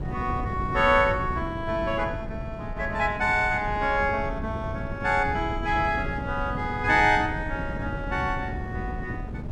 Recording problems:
wind noise; below 210 Hz, SNR 8 dB

